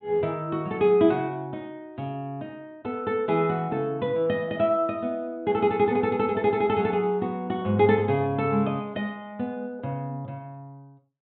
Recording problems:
treble cut off; nothing above 4 kHz

